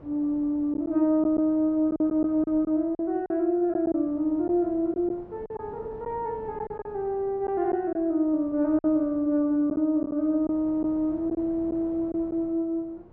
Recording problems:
wind noise; below 540 Hz, SNR 22 dB
packet loss; 6% of the sound replaced, filled with silence

